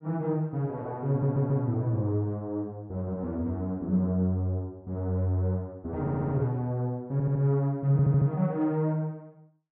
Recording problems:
audio stuttering; 4 times, first at 1 s

